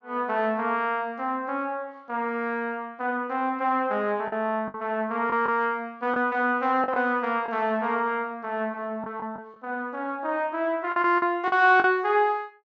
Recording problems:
treble missing; nothing above 8 kHz
packet loss; 4% of the sound replaced, filled with the last packet

